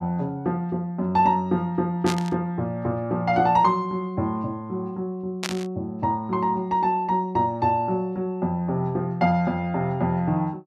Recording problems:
burst of static; at 2 s and at 5.5 s; peak 0 dB vs average level

